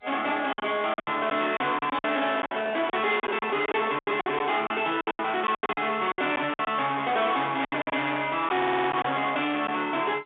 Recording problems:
telephone audio; 340 Hz to 3.8 kHz, G.711
distortion; soft clipping, signal-to-distortion ratio 8 dB
lost packets; 13% of the sound replaced, filled with silence
microphone handling noise; from 2 to 4 s; peak -5 dB vs average level
audio stuttering; at 8.5 s

